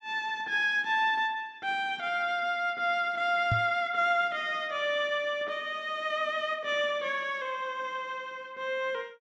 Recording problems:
microphone bump; at 3.5 s; peak +3 dB vs average level

